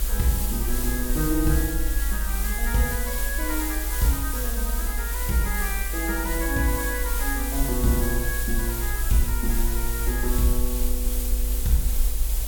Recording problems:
hiss; slope -2 dB per octave, SNR 2 dB
rumble; below 52 Hz, strongest tone 50 Hz, SNR 1 dB

